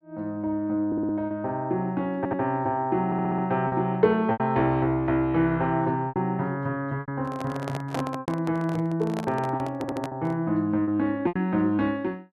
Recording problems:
lost packets; 5% of the sound replaced, filled with repeated pitch periods
audio stuttering; 4 times, first at 1 s
handling noise; from 7 to 10 s; peak -2 dB vs average level

